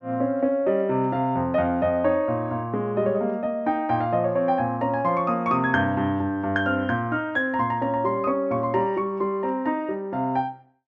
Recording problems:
none

